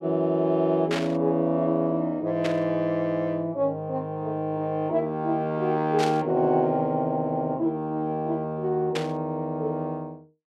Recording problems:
static burst; 4 times, first at 1 s; peak -1 dB vs average level

